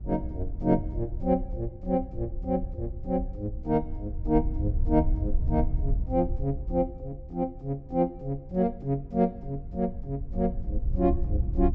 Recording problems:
low-pass filter; nothing above 8 kHz
wind on the microphone; below 74 Hz, SNR 4 dB

